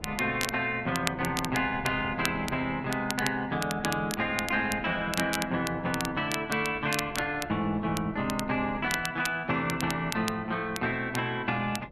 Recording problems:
wind noise; below 390 Hz, SNR 18 dB
crackling; vinyl, SNR 9 dB

